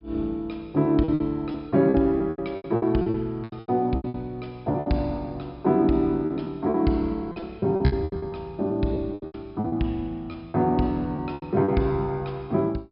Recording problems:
treble cut off; nothing above 5.5 kHz
lost packets; 14% of the sound replaced, filled with repeated pitch periods

